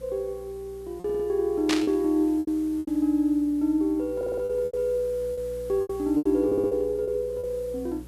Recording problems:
hum; 60 Hz, harmonics up to 540 Hz, SNR 21 dB
hiss; slope -1 dB per octave, SNR 27 dB
lost packets; 9% of the sound replaced, filled with repeated pitch periods
stutter; at 1 s, at 4 s and at 6.5 s
burst of static; at 1.5 s; peak +2 dB vs average level

